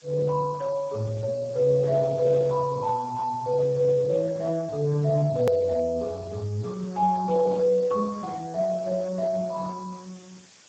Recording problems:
codec artefacts; Speex, log-spectral distance 5 dB, nothing above 16.6 kHz
hiss; slope +1 dB per octave, SNR 26 dB
edit click; at 5.5 s

